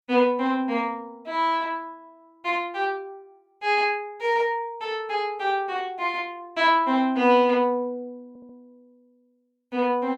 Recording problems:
audio stuttering; at 8.5 s

